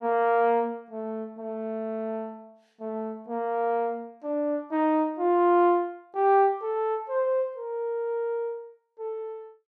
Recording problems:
none

